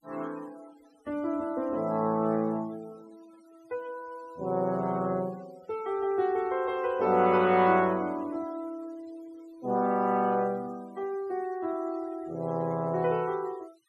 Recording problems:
denoising artefacts; signal-to-artefact ratio 26 dB

